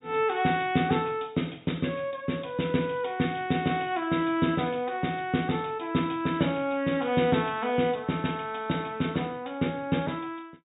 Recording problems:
low-pass filter; nothing above 4 kHz

